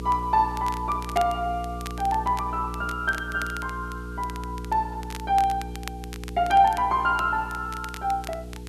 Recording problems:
hum; 60 Hz, harmonics up to 480 Hz, SNR 11 dB
hiss; slope 0 dB per octave, SNR 30 dB
crackling; vinyl, SNR 18 dB

